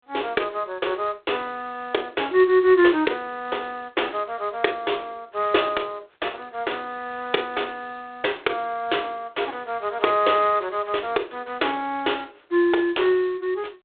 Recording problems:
phone line; 300 Hz to 3.7 kHz, G.726

